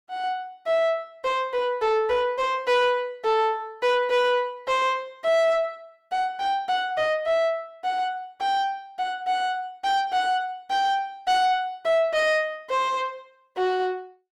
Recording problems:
distortion; soft clipping, signal-to-distortion ratio 11 dB

